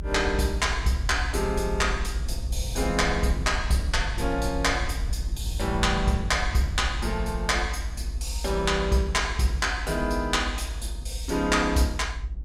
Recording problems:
low-frequency rumble; below 64 Hz, strongest tone 50 Hz, SNR 6 dB

